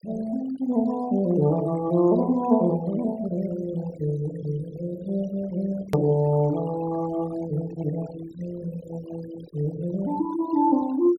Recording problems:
denoising artefacts; signal-to-artefact ratio 19 dB
edit click; at 6 s

